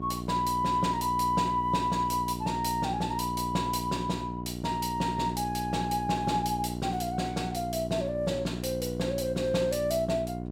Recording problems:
hum; 60 Hz, harmonics up to 1 kHz, SNR 6 dB

